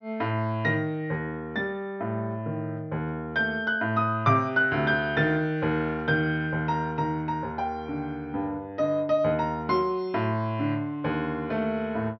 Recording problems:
treble cut off; nothing above 6.1 kHz

